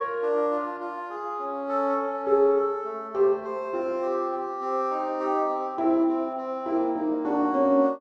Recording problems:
none

